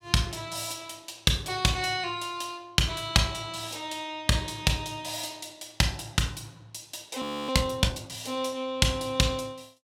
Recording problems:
audio freezing; at 7 s

